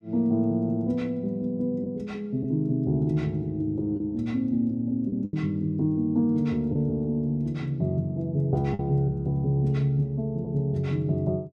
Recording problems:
lost packets; 2% of the sound replaced, filled with the last packet

